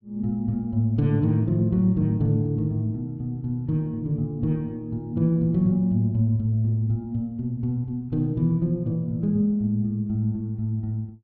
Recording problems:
none

